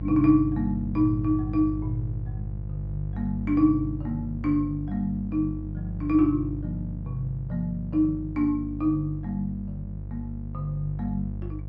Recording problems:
hum; 50 Hz, harmonics up to 500 Hz, SNR 8 dB

